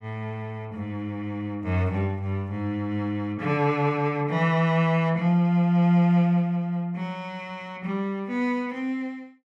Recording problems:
none

